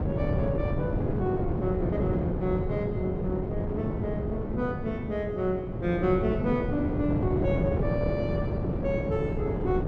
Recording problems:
wind on the microphone; below 360 Hz, SNR -1 dB

